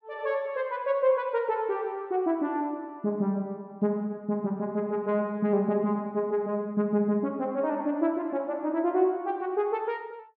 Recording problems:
none

